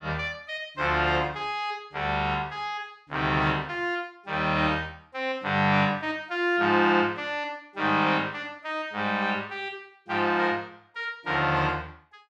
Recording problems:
none

